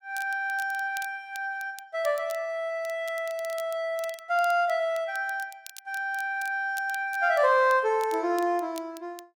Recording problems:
crackle; vinyl, SNR 20 dB

